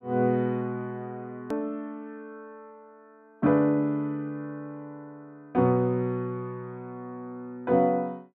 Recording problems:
click at an edit; at 1.5 s

